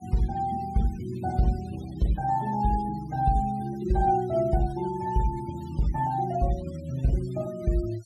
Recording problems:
noise reduction artefacts; signal-to-artefact ratio 22 dB

